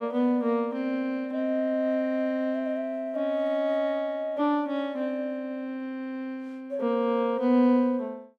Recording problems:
none

